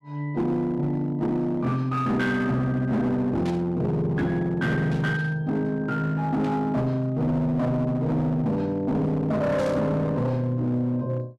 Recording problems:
distorted audio; hard clipping, signal-to-distortion ratio 10 dB
static burst; 4 times, first at 3.5 s; peak -12 dB vs average level

